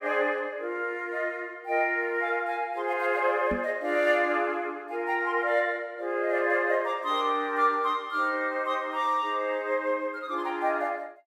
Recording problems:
knock on the microphone; at 3.5 s; peak -2 dB vs average level

